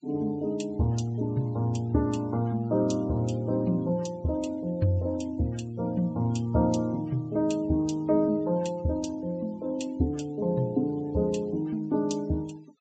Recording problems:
low-pass filter; nothing above 8 kHz
noise reduction artefacts; signal-to-artefact ratio 27 dB

